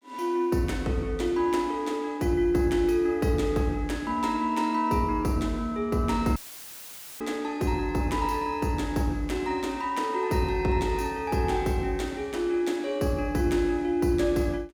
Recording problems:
dropout; at 6.5 s for 1 s; filled with static

